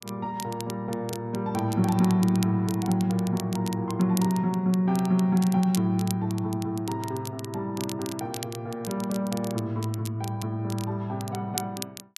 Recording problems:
crackling; vinyl, SNR 14 dB

